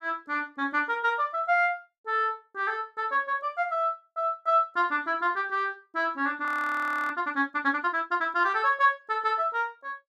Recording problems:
audio freezing; at 6.5 s for 0.5 s

